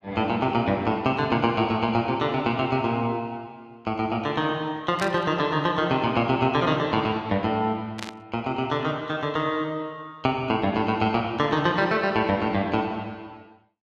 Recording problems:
static burst; at 5 s and at 8 s; peak -5 dB vs average level

